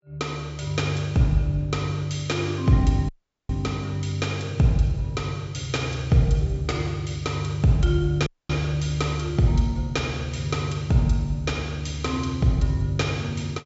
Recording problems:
low-pass filter; nothing above 8 kHz
dropout; at 3 s and at 8.5 s

